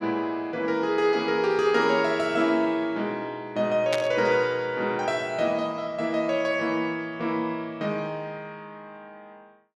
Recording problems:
burst of static; at 4 s; peak 0 dB vs average level

